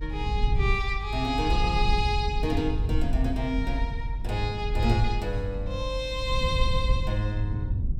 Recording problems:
low-frequency rumble; below 78 Hz, SNR 1 dB

